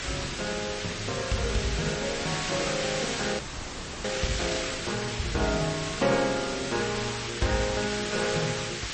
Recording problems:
lossy compression; MP3, log-spectral distance 14 dB, nothing above 8.2 kHz
background hiss; SNR 2 dB
wind on the microphone; below 800 Hz, SNR 16 dB
audio freezing; at 3.5 s for 0.5 s

